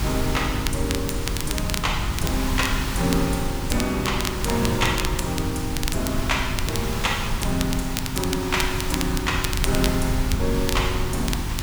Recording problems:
electrical hum; 50 Hz, harmonics up to 400 Hz, SNR 9 dB
background hiss; SNR 6 dB
rumble; below 96 Hz, SNR 4 dB
crackling; vinyl, SNR 6 dB

